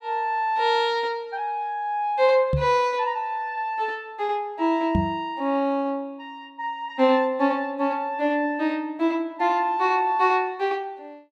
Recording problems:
microphone bump; at 2.5 s and at 5 s; peak +4 dB vs average level

